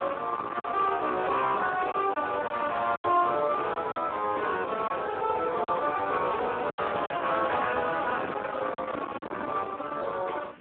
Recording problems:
phone line; 220 Hz to 2.1 kHz, Speex
distorted audio; soft clipping, signal-to-distortion ratio 12 dB
hiss; SNR 29 dB
wind noise; below 1.2 kHz, SNR 16 dB
lost packets; 5% of the sound replaced, filled with silence

